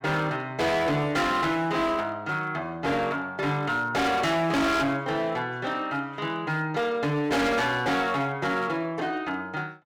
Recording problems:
distorted audio; hard clipping, signal-to-distortion ratio 6 dB

